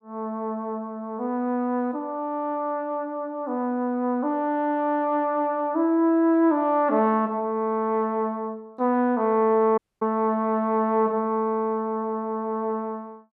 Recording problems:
audio cutting out; at 10 s

